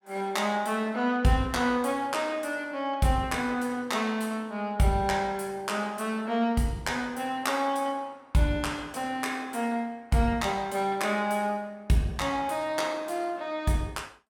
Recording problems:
none

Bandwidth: 17.5 kHz